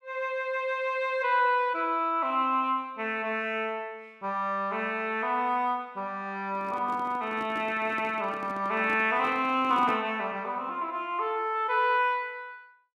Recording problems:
handling noise; from 6.5 to 10 s; peak -6 dB vs average level

